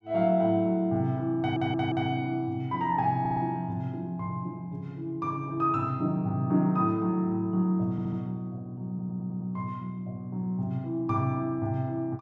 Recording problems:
stutter; 4 times, first at 1.5 s

